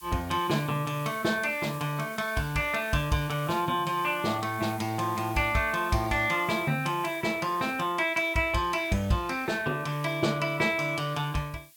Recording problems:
background hiss; slope +6 dB per octave, SNR 20 dB

